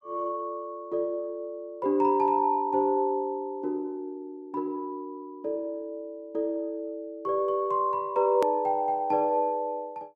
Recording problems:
edit click; at 8.5 s

